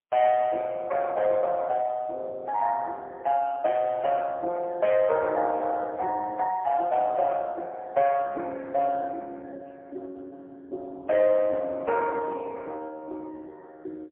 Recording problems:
phone line; 300 Hz to 3.1 kHz, AMR-NB, then MP3

